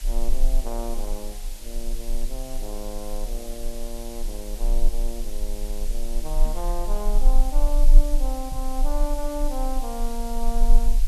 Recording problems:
background hiss; SNR 7 dB
low-frequency rumble; below 30 Hz, strongest tone 24 Hz, SNR -6 dB
knock on the microphone; at 6.5 s and at 8.5 s; peak 0 dB vs average level

